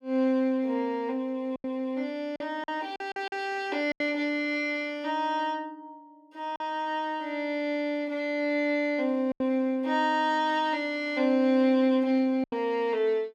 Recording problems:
lost packets; 4% of the sound replaced, filled with silence

